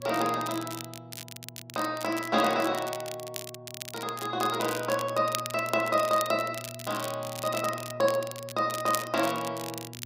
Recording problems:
electrical hum; 60 Hz, harmonics up to 600 Hz, SNR 18 dB
crackling; vinyl, SNR 11 dB

